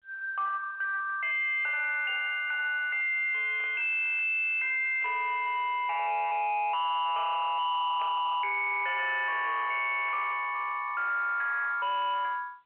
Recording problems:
phone line; 990 Hz to 3.1 kHz, G.711
distortion; hard clipping, signal-to-distortion ratio 7 dB
burst of static; 4 times, first at 3.5 s; peak -15 dB vs average level

